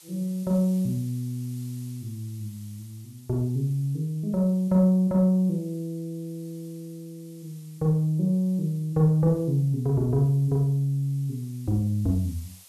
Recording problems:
background hiss; SNR 26 dB

